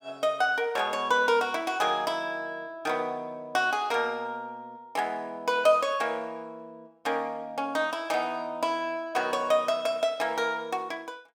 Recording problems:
none

